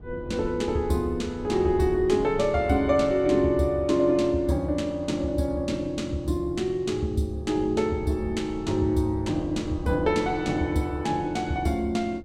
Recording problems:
wind noise; below 190 Hz, SNR 17 dB

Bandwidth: 16 kHz